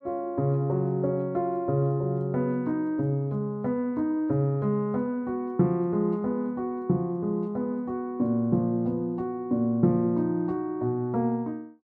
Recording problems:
none

